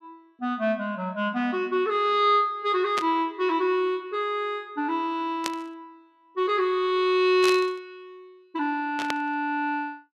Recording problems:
static burst; 4 times, first at 3 s; peak 0 dB vs average level

